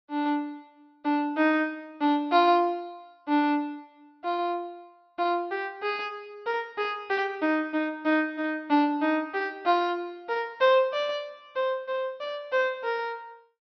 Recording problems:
low-pass filter; nothing above 5.8 kHz

